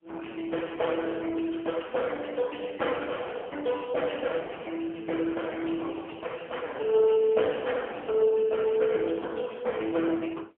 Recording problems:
telephone audio; 300 Hz to 3.3 kHz, AMR-NB, then MP3

